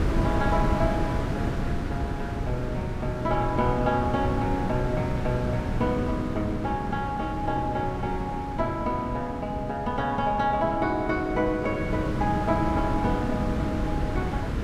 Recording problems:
wind noise; below 290 Hz, SNR 3 dB

